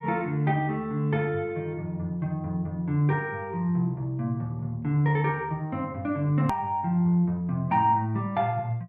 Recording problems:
hard cut with a click; at 6.5 s

